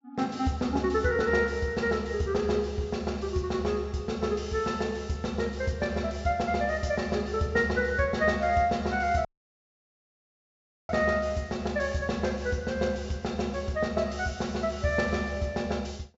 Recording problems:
treble missing; nothing above 8 kHz
audio cutting out; at 9.5 s for 1.5 s

